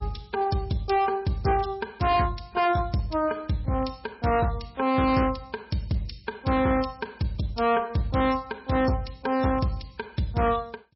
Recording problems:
codec artefacts; MP3, log-spectral distance 5 dB, nothing above 5.5 kHz
distortion; hard clipping, signal-to-distortion ratio 11 dB

